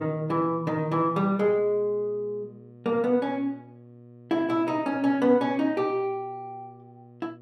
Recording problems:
electrical hum; 60 Hz, harmonics up to 720 Hz, SNR 23 dB

